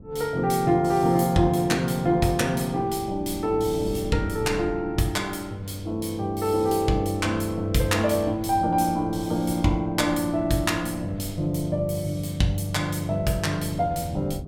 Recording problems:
wind noise; below 230 Hz, SNR 16 dB

